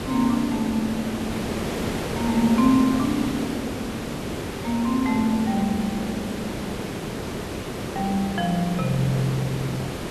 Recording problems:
hiss; slope -6 dB per octave, SNR 5 dB

